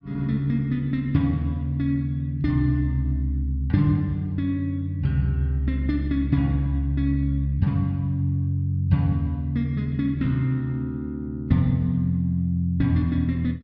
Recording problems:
treble cut off; nothing above 5.5 kHz

